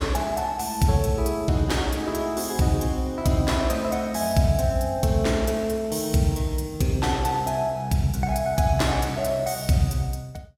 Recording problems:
none

